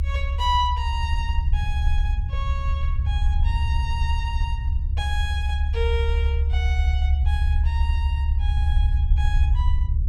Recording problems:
rumble; below 72 Hz, SNR -8 dB

